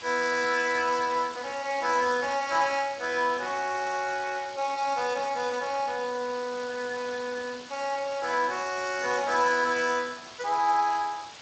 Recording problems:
lossy compression; Speex, log-spectral distance 13 dB
hiss; slope 0 dB per octave, SNR 16 dB

